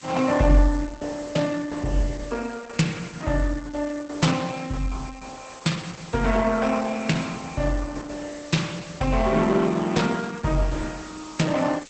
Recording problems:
codec artefacts; Opus, log-spectral distance 8 dB, nothing above 8 kHz
hiss; slope +2 dB per octave, SNR 20 dB

